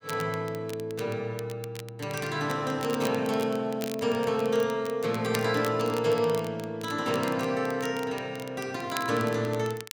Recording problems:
crackling; vinyl, SNR 16 dB

